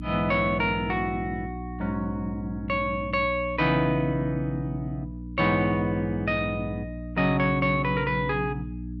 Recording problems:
electrical hum; 60 Hz, harmonics up to 300 Hz, SNR 10 dB

